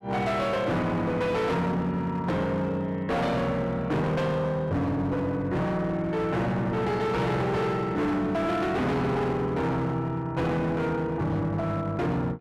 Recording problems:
distorted audio; hard clipping, signal-to-distortion ratio 7 dB

